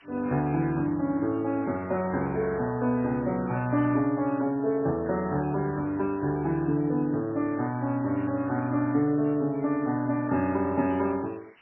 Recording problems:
lossy codec; MP3, then MP2, log-spectral distance 8 dB, nothing above 2.5 kHz
background hiss; SNR 28 dB

